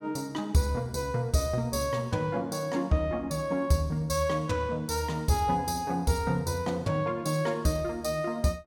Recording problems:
none

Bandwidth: 17.5 kHz